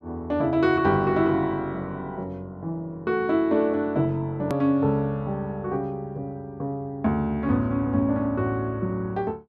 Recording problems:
edit click; at 4.5 s

